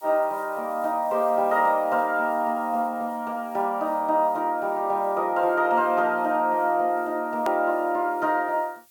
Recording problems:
hiss; SNR 28 dB
click at an edit; at 7.5 s

